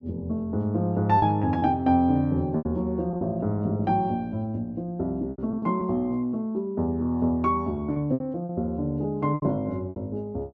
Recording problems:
lost packets; 7% of the sound replaced, filled with repeated pitch periods

